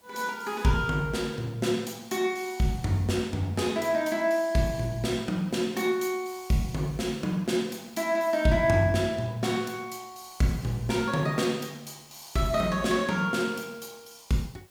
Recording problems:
hiss; slope -3 dB per octave, SNR 30 dB

